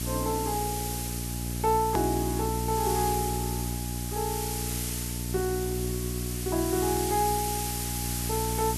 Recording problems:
hum; 60 Hz, harmonics up to 660 Hz, SNR 3 dB
hiss; slope +2 dB per octave, SNR 3 dB
click at an edit; at 2 s

